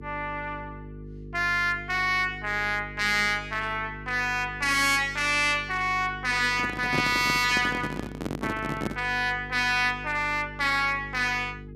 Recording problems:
distortion; hard clipping, uneven, signal-to-distortion ratio 10 dB
hum; 50 Hz, harmonics up to 450 Hz, SNR 17 dB
handling noise; from 6.5 to 9 s; peak 0 dB vs average level

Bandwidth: 14.5 kHz